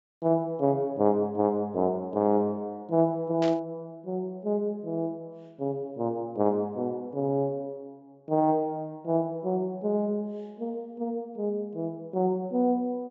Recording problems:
low-pass filter; nothing above 8 kHz
static burst; at 3.5 s; peak -6 dB vs average level

